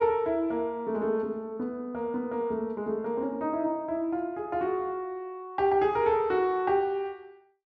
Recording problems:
none

